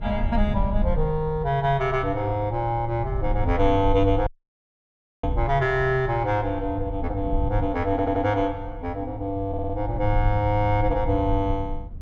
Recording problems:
low-frequency rumble; below 72 Hz, SNR 7 dB
audio cutting out; at 4.5 s for 1 s
stutter; at 8 s and at 9.5 s

